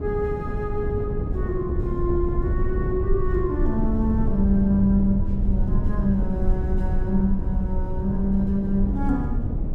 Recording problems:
low-frequency rumble; below 66 Hz, SNR 4 dB
wind on the microphone; below 180 Hz, SNR 4 dB

